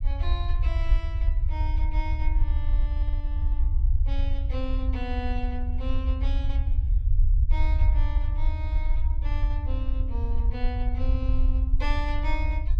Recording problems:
low-frequency rumble; below 64 Hz, SNR -11 dB

